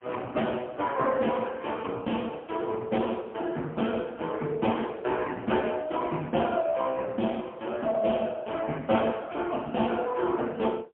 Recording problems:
phone line; 190 Hz to 3.2 kHz, AMR-NB, then MP3

